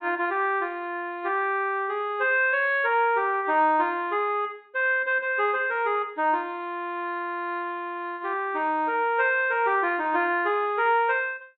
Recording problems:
low-pass filter; nothing above 4 kHz

